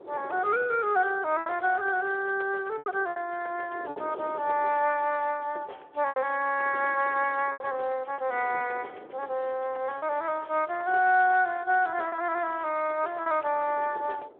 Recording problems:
phone line; 340 Hz to 3.5 kHz, Speex
wind noise; below 590 Hz, SNR 20 dB
packet loss; 4% of the sound replaced, filled with repeated pitch periods

